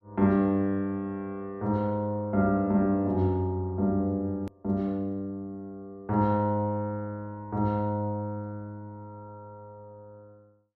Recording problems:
edit click; at 4.5 s

